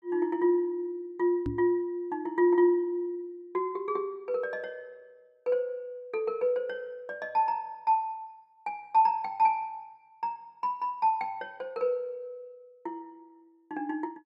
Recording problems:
knock on the microphone; at 1.5 s; peak 0 dB vs average level

